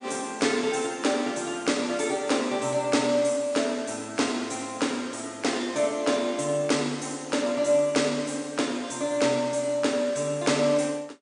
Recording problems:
lossy codec; MP3, log-spectral distance 4 dB, nothing above 9.5 kHz

